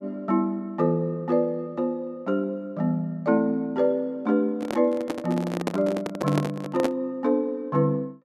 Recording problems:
handling noise; from 4.5 to 7 s; peak +3 dB vs average level

